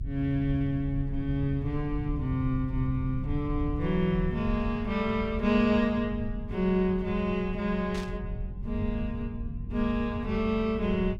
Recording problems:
rumble; below 110 Hz, SNR 7 dB
burst of static; at 8 s; peak -9 dB vs average level

